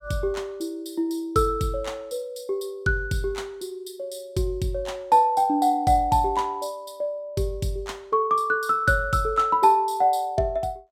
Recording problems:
none

